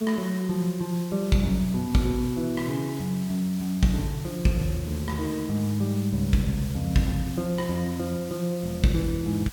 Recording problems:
hiss; slope 0 dB per octave, SNR 16 dB

